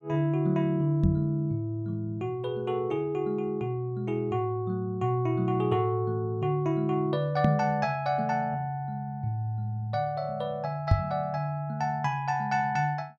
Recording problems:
knock on the microphone; at 1 s, at 7.5 s and at 11 s; peak +10 dB vs average level

